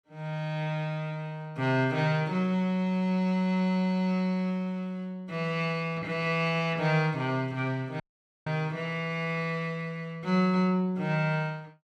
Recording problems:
dropout; at 8 s

